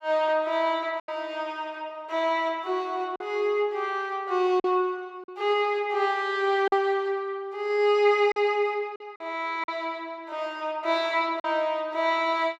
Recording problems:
lost packets; 4% of the sound replaced, filled with silence

